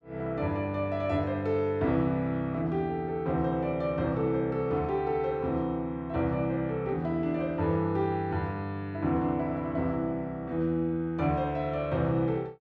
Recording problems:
none

